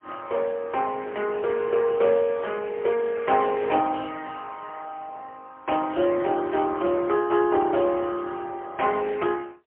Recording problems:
phone line; 320 Hz to 3.2 kHz, AMR-NB, then MP3

